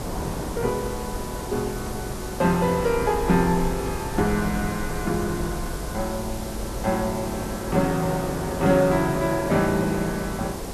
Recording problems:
background hiss; slope -2 dB per octave, SNR 13 dB
low-frequency rumble; below 84 Hz, SNR 12 dB
wind on the microphone; below 700 Hz, SNR 9 dB

